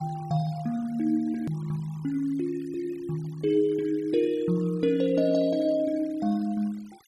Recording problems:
denoising artefacts; signal-to-artefact ratio 26 dB
click at an edit; at 1.5 s

